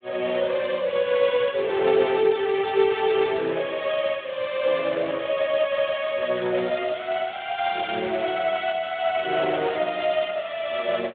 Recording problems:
telephone audio; 280 Hz to 3.6 kHz, Speex

